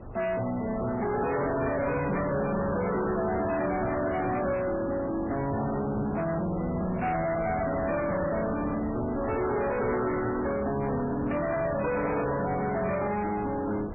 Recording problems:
codec artefacts; MP3, then MP3, log-spectral distance 4 dB, nothing above 2.4 kHz
distortion; soft clipping, signal-to-distortion ratio 7 dB
wind on the microphone; below 700 Hz, SNR 11 dB

